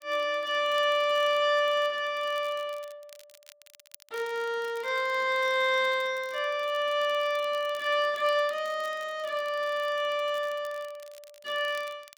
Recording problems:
crackle; vinyl, SNR 25 dB

